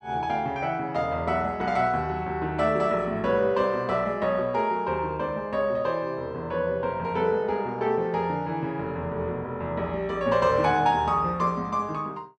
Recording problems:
none

